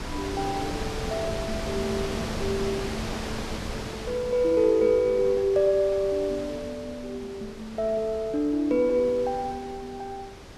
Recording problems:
wind noise; below 1.7 kHz, SNR 9 dB

